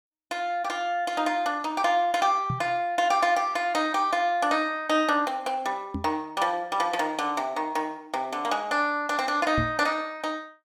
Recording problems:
microphone bump; at 2.5 s, at 6 s and at 9.5 s; peak 0 dB vs average level

